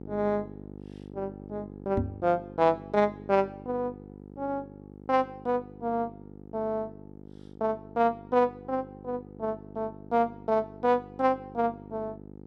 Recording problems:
electrical hum; 50 Hz, harmonics up to 900 Hz, SNR 16 dB
microphone bump; at 2 s; peak +4 dB vs average level

